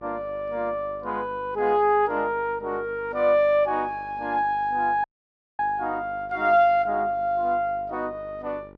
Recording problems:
mains hum; 50 Hz, harmonics up to 1.9 kHz, SNR 23 dB
dropout; at 5 s for 0.5 s

